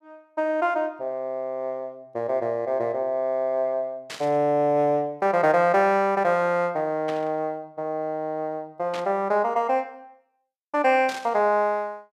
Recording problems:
static burst; 4 times, first at 4 s; peak -7 dB vs average level

